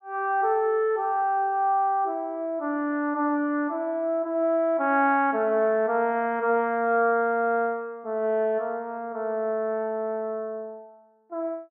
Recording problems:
none

